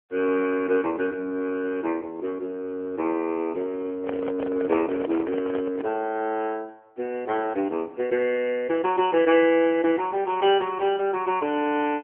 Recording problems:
telephone audio; 220 Hz to 3.2 kHz, AMR-NB
handling noise; from 4 to 6 s; peak -3 dB vs average level

